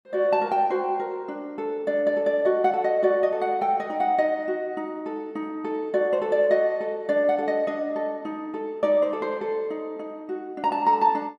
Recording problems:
none

